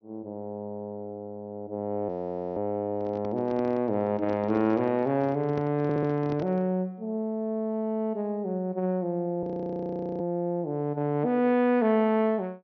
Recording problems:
low-pass filter; nothing above 6.2 kHz
frozen audio; at 2 s and at 9.5 s for 1 s
handling noise; from 3 to 6.5 s; peak -6 dB vs average level
stutter; at 6 s

